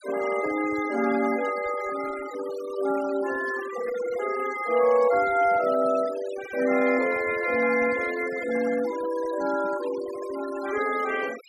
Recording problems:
noise reduction artefacts; signal-to-artefact ratio 15 dB

